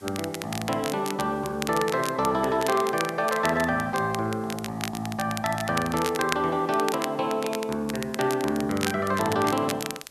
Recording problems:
background hiss; slope -2 dB per octave, SNR 27 dB
crackle; vinyl, SNR 10 dB

